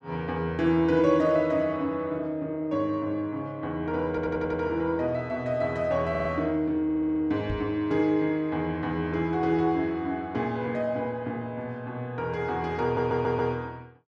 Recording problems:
audio stuttering; 4 times, first at 4 s
microphone bump; at 7.5 s; peak -3 dB vs average level

